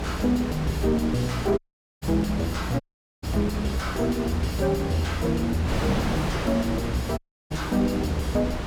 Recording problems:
distorted audio; soft clipping, signal-to-distortion ratio 9 dB
electrical hum; 60 Hz, harmonics up to 360 Hz, SNR 10 dB
wind on the microphone; below 970 Hz, SNR 5 dB
audio cutting out; at 1.5 s, at 3 s and at 7 s

